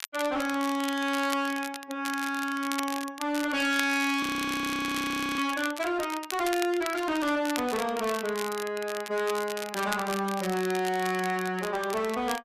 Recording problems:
distorted audio; hard clipping, signal-to-distortion ratio 11 dB
crackle; vinyl, SNR 10 dB
frozen audio; at 4 s for 1 s

